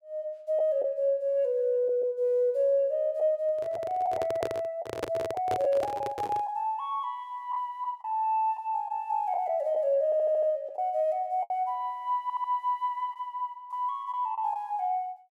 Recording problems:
packet loss; 4% of the sound replaced, filled with the last packet
microphone handling noise; from 3.5 to 6.5 s; peak +1 dB vs average level
stutter; at 10 s and at 12 s

